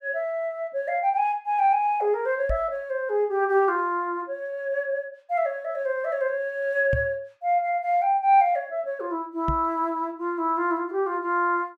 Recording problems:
knock on the microphone; at 2.5 s, at 7 s and at 9.5 s; peak +1 dB vs average level

